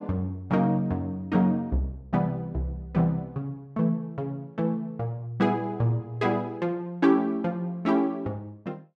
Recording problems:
none

